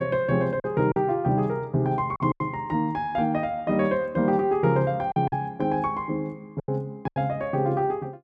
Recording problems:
lost packets; 5% of the sound replaced, filled with silence

